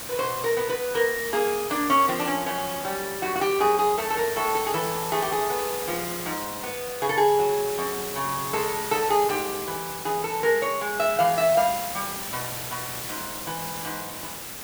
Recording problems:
hiss; slope -2 dB per octave, SNR 7 dB

